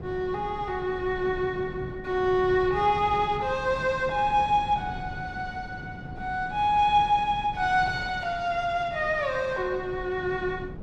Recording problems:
wind noise; below 250 Hz, SNR 15 dB

